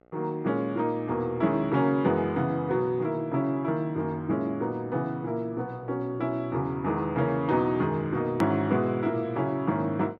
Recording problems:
mains hum; 60 Hz, harmonics up to 2.2 kHz, SNR 28 dB
click at an edit; at 8.5 s

